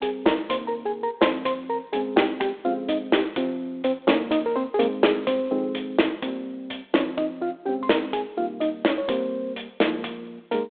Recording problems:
telephone audio; 240 Hz to 3.6 kHz, G.726

